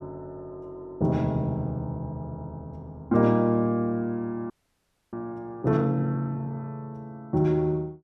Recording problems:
frozen audio; at 4.5 s for 0.5 s

